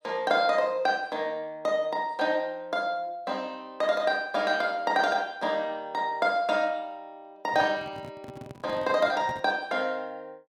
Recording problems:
microphone handling noise; from 7.5 to 9.5 s; peak -10 dB vs average level

